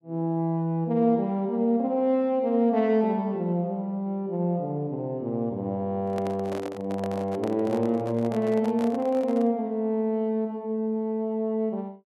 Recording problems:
handling noise; from 6 to 9.5 s; peak -5 dB vs average level

